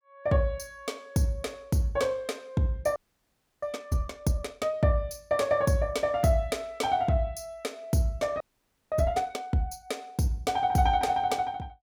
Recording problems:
audio freezing; at 3 s for 0.5 s and at 8.5 s for 0.5 s

